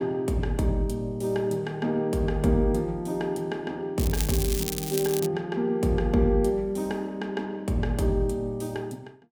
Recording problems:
crackle; from 4 to 5.5 s; loose cable, SNR 6 dB

